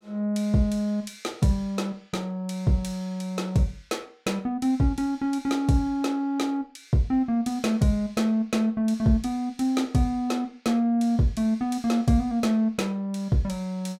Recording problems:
none

